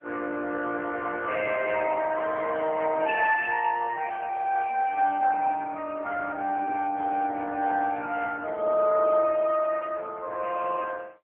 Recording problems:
phone line; 260 Hz to 2.6 kHz, AMR-NB

